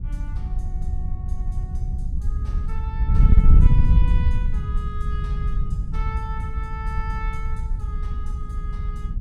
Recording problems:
wind noise; below 74 Hz, SNR -15 dB

